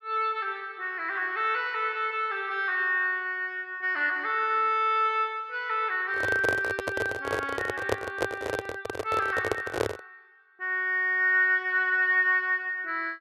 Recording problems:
handling noise; from 6 to 10 s; peak +4 dB vs average level

